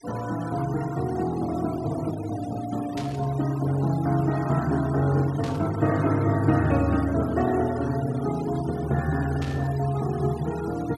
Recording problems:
denoising artefacts; signal-to-artefact ratio 17 dB
static burst; at 3 s, at 5.5 s and at 9.5 s; peak -9 dB vs average level

